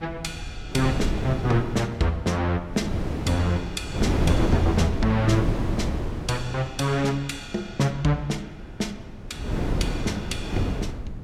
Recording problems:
rumble; below 100 Hz, SNR 15 dB
wind noise; below 320 Hz, SNR 2 dB

